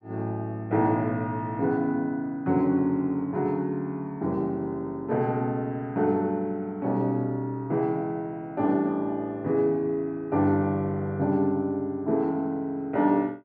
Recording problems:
none

